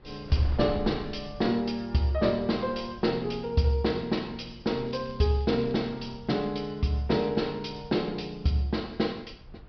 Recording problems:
low-pass filter; nothing above 5.5 kHz
wind on the microphone; below 130 Hz, SNR 17 dB
crackling; at 5 s; loose cable, SNR 27 dB

